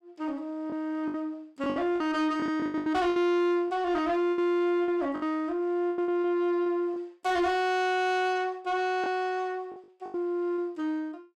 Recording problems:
distorted audio; soft clipping, signal-to-distortion ratio 12 dB
lost packets; 9% of the sound replaced, filled with the last packet

